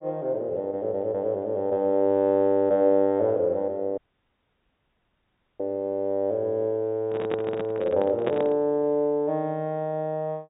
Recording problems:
low-pass filter; nothing above 3.8 kHz
audio cutting out; at 4 s for 1.5 s
microphone handling noise; from 7 to 8.5 s; peak -1 dB vs average level

